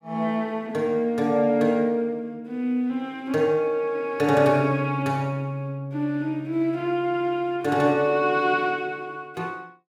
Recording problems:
none

